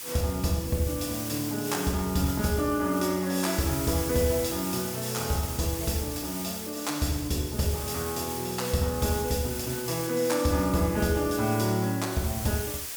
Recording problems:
background hiss; slope +1 dB per octave, SNR 8 dB

